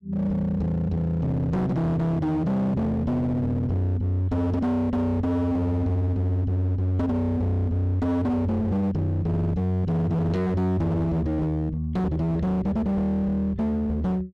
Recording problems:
distortion; hard clipping, uneven, signal-to-distortion ratio 7 dB

